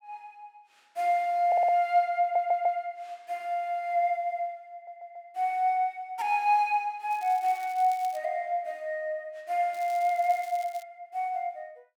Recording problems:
audio stuttering; at 1.5 s, at 2 s and at 4.5 s
crackling; from 7 to 8 s and from 9.5 to 11 s; loose cable, SNR 23 dB

